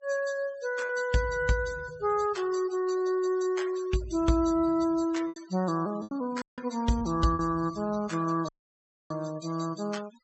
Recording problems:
low-pass filter; nothing above 8 kHz
noise reduction artefacts; signal-to-artefact ratio 18 dB
packet loss; 3% of the sound replaced, filled with repeated pitch periods
dropout; at 6.5 s and at 8.5 s for 0.5 s

